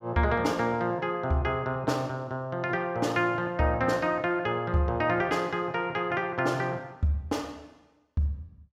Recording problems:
none

